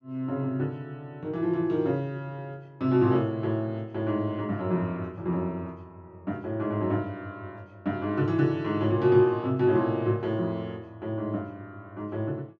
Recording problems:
none

